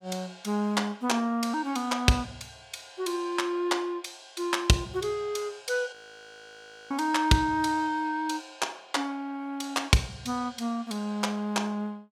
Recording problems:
frozen audio; at 6 s for 1 s

